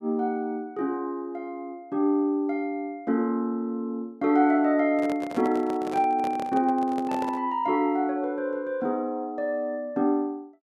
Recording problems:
microphone handling noise; from 5 to 7.5 s; peak -5 dB vs average level

